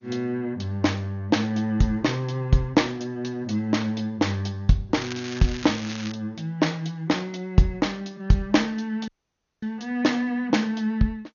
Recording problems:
codec artefacts; MP2, log-spectral distance 2 dB, nothing above 6.7 kHz
crackle; from 5 to 6 s; loose cable, SNR 12 dB
audio cutting out; at 9 s for 0.5 s

